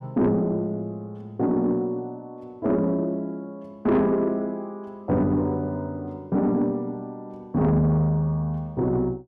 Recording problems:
distortion; soft clipping, signal-to-distortion ratio 12 dB

